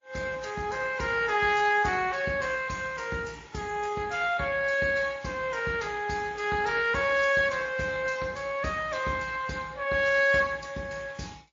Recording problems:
lossy codec; Speex, then MP3, log-spectral distance 5 dB, nothing above 6.7 kHz

